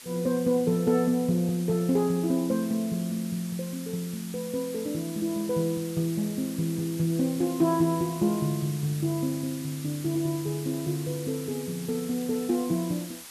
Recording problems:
background hiss; slope +1 dB per octave, SNR 14 dB

